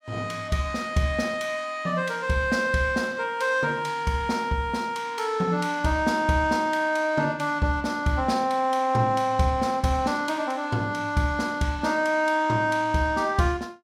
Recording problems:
none

